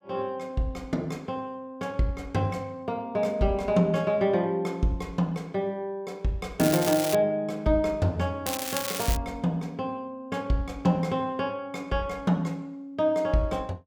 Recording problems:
crackle; at 6.5 s and at 8.5 s; loose cable, SNR 4 dB

